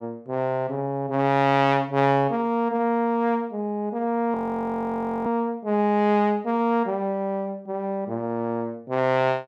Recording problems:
audio freezing; at 4.5 s for 1 s

